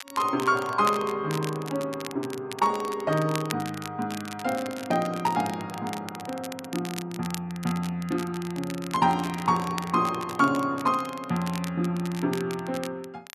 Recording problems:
crackling; vinyl, SNR 13 dB

